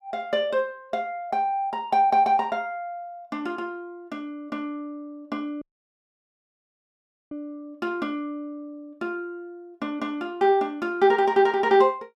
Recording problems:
audio cutting out; at 5.5 s for 1.5 s

